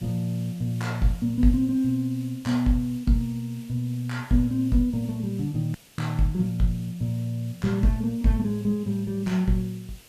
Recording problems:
hiss; SNR 24 dB
audio cutting out; at 6 s

